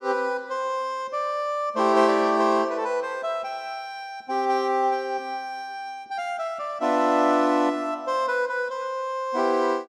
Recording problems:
none

